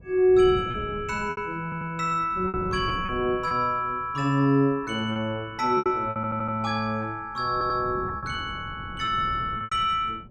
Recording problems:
wind noise; below 240 Hz, SNR 14 dB
packet loss; 7% of the sound replaced, filled with repeated pitch periods
audio stuttering; at 1.5 s, at 6 s and at 7.5 s

